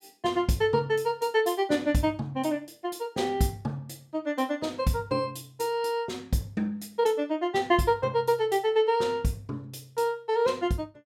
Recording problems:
none

